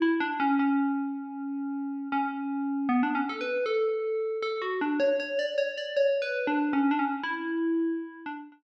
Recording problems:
none

